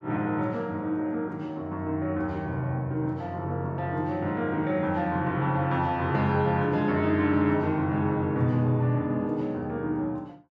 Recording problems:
none

